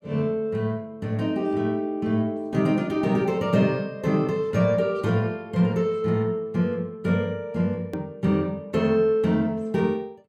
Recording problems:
edit click; at 8 s

